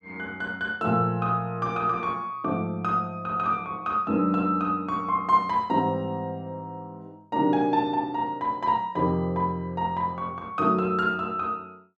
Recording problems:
none

